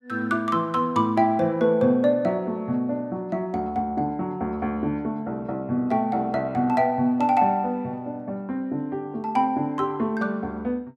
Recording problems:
none

